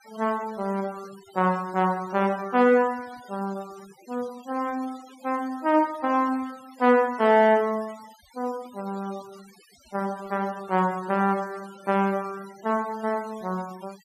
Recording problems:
denoising artefacts; signal-to-artefact ratio 23 dB

